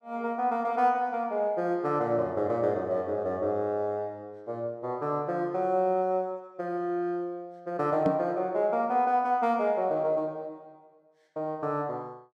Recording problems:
microphone bump; at 8 s; peak +2 dB vs average level

